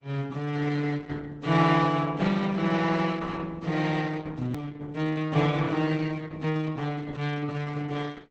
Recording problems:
codec artefacts; Opus, log-spectral distance 4 dB, nothing above 19.5 kHz
edit click; at 4.5 s

